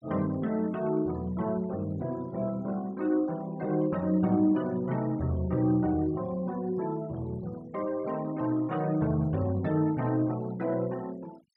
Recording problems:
noise reduction artefacts; signal-to-artefact ratio 24 dB

